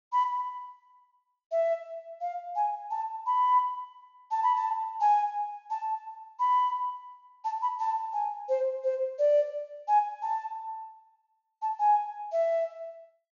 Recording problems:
treble cut off; nothing above 6.8 kHz

